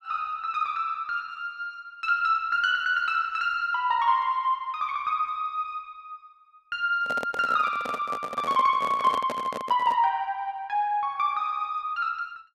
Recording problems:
handling noise; from 7 to 10 s; peak -3 dB vs average level

